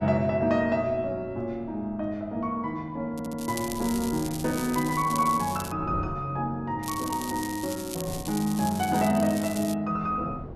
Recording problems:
wind noise; below 330 Hz, SNR 18 dB
audio stuttering; at 3 s
crackling; from 3 to 5.5 s and from 7 to 9.5 s; loose cable, SNR 11 dB

